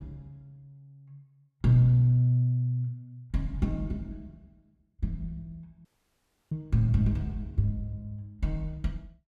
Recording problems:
audio cutting out; at 6 s for 0.5 s

